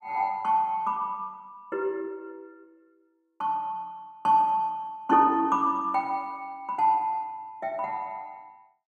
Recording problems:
none

